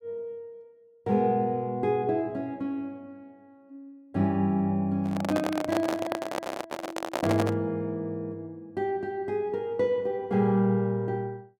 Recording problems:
microphone handling noise; from 5 to 7.5 s; peak +3 dB vs average level

